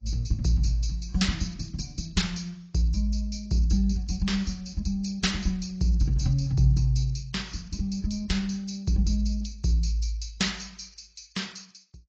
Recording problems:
codec artefacts; AAC, log-spectral distance 5 dB

